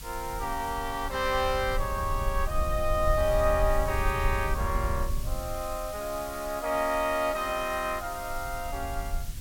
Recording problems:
background hiss; slope +2 dB per octave, SNR 14 dB
low-frequency rumble; below 70 Hz, SNR 5 dB

